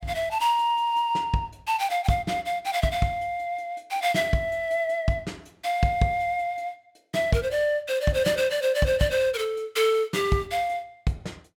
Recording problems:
none

